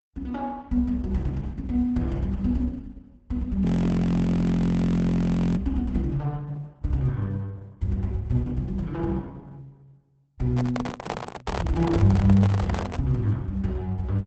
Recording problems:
lossy compression; Opus, log-spectral distance 2 dB, nothing above 8 kHz
audio freezing; at 3.5 s for 2 s
microphone handling noise; from 11 to 13 s; peak -1 dB vs average level

